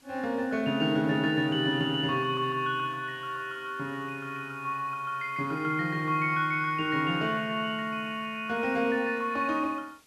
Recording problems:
background hiss; slope -1 dB per octave, SNR 29 dB

